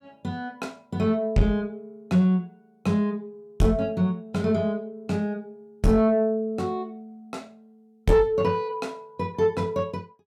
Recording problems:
distorted audio; soft clipping, signal-to-distortion ratio 10 dB

